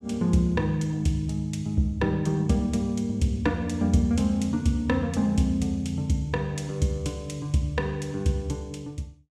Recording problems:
none

